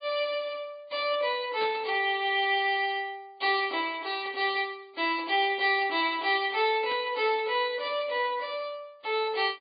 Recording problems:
treble cut off; nothing above 4.6 kHz
lossy compression; AAC, log-spectral distance 2 dB
static burst; at 1.5 s and at 7 s; peak -10 dB vs average level

